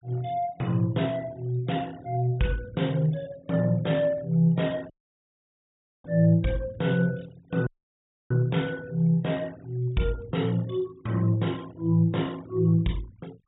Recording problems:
low-pass filter; nothing above 4 kHz
noise reduction artefacts; signal-to-artefact ratio 25 dB
dropout; at 5 s for 1 s and at 7.5 s for 0.5 s

